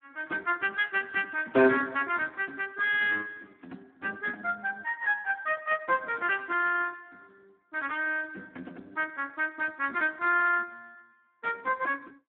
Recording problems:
phone line; 220 Hz to 3.2 kHz, Speex

